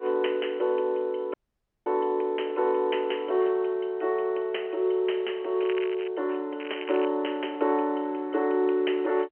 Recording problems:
telephone audio; 320 Hz to 3.1 kHz, G.711
audio cutting out; at 1.5 s for 0.5 s
crackle; at 5.5 s and at 6.5 s; loose cable, SNR 15 dB

